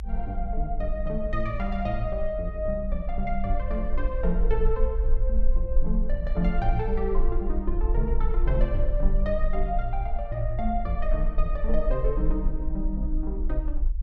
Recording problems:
rumble; below 44 Hz, strongest tone 20 Hz, SNR -1 dB

